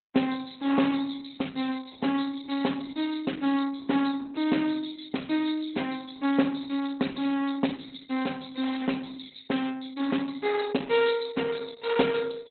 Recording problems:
lossy codec; Opus, log-spectral distance 8 dB, nothing above 4 kHz

